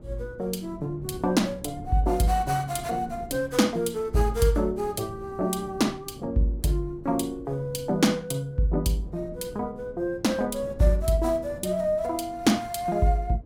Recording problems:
wind noise; below 270 Hz, SNR 18 dB

